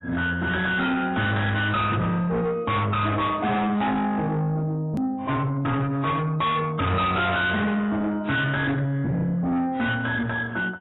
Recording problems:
codec artefacts; AAC, log-spectral distance 2 dB, nothing above 3.8 kHz
distortion; soft clipping, signal-to-distortion ratio 6 dB
edit click; at 5 s

